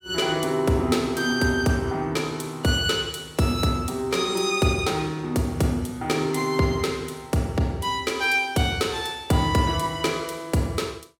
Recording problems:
none

